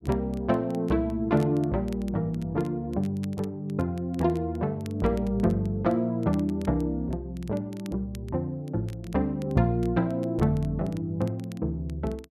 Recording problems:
crackling; vinyl, SNR 26 dB

